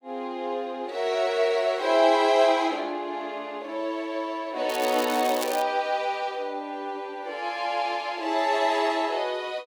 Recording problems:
crackle; at 4.5 s; loose cable, SNR 11 dB

